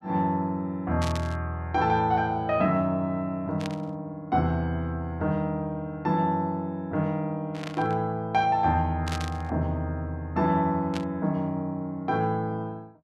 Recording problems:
static burst; 5 times, first at 1 s; peak -4 dB vs average level

